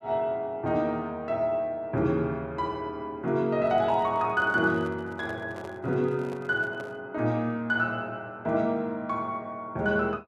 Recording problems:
microphone handling noise; from 3.5 to 7 s; peak -10 dB vs average level

